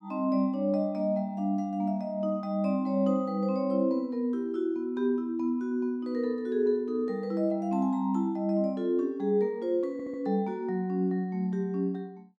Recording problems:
audio stuttering; at 10 s

